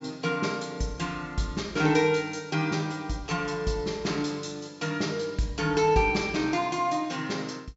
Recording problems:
low-pass filter; nothing above 8 kHz

